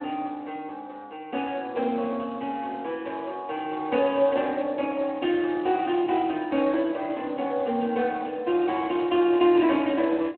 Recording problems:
phone line; 240 Hz to 3.4 kHz, Speex

